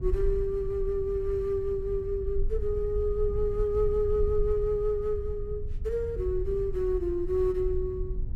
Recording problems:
rumble; below 60 Hz, SNR 7 dB

